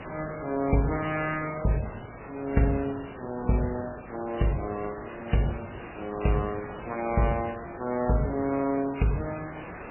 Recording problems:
lossy codec; Vorbis, then MP3, log-spectral distance 12 dB, nothing above 2.7 kHz
background hiss; SNR 13 dB

